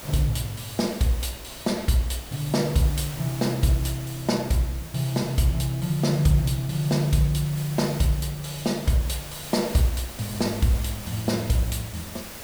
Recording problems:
hiss; SNR 14 dB
wind noise; below 360 Hz, SNR 22 dB

